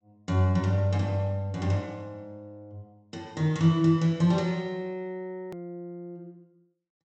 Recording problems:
treble cut off; nothing above 8 kHz
click at an edit; at 5.5 s

